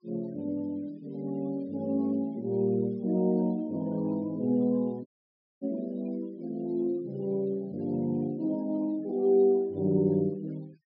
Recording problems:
low-pass filter; nothing above 5.5 kHz
denoising artefacts; signal-to-artefact ratio 28 dB
audio cutting out; at 5 s for 0.5 s

